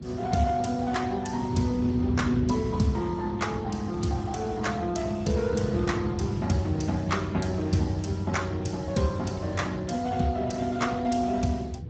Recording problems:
codec artefacts; Speex, log-spectral distance 4 dB, nothing above 7.6 kHz
wind noise; below 190 Hz, SNR 7 dB

